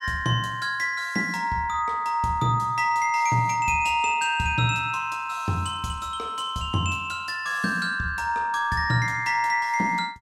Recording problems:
none

